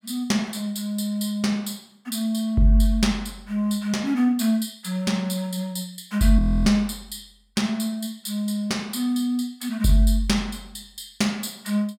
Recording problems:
frozen audio; at 6.5 s

